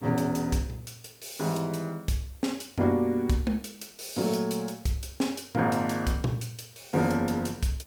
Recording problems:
hiss; slope -3 dB per octave, SNR 26 dB

